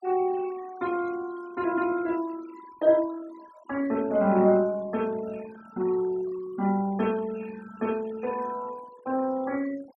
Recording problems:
denoising artefacts; signal-to-artefact ratio 20 dB

